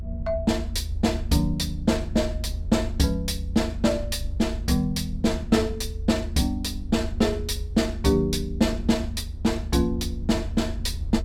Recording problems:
rumble; below 78 Hz, SNR 8 dB

